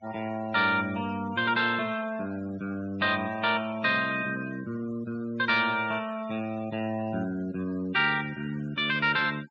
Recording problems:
treble missing; nothing above 8 kHz
noise reduction artefacts; signal-to-artefact ratio 20 dB

